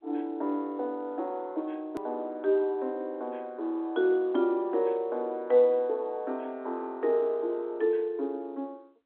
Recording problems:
phone line; 260 Hz to 3.5 kHz, G.711
hard cut with a click; at 2 s

